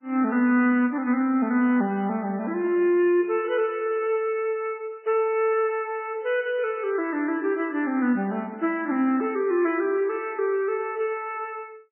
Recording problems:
codec artefacts; MP3, log-spectral distance 2 dB, nothing above 2.7 kHz

